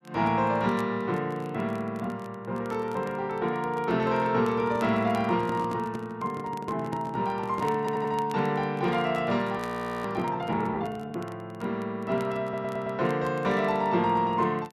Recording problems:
crackling; vinyl, SNR 26 dB
handling noise; from 4.5 to 8.5 s; peak -5 dB vs average level
stutter; at 8 s and at 12 s
frozen audio; at 9.5 s

